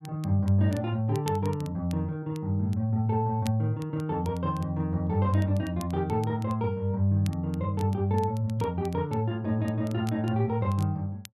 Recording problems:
crackle; vinyl, SNR 24 dB

